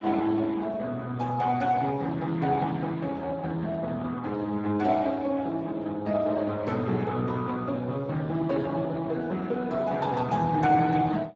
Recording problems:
codec artefacts; Speex, log-spectral distance 3 dB, nothing above 7.3 kHz

